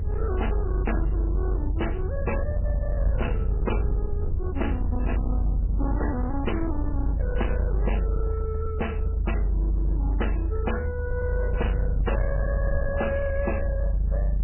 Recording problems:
lossy codec; MP3, log-spectral distance 2 dB, nothing above 3 kHz
distorted audio; hard clipping, signal-to-distortion ratio 10 dB
low-frequency rumble; below 78 Hz, strongest tone 48 Hz, SNR -4 dB

